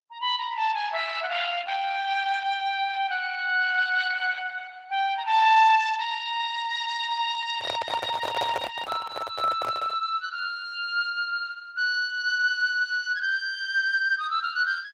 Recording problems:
codec artefacts; Opus, then Opus, log-spectral distance 4 dB
handling noise; from 7.5 to 10 s; peak 0 dB vs average level

